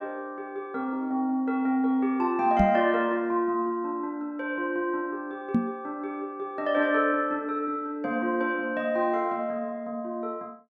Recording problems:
microphone bump; at 2.5 s and at 5.5 s; peak +8 dB vs average level

